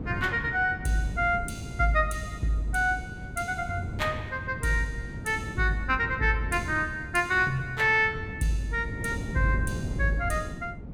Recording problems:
wind noise; below 230 Hz, SNR 10 dB

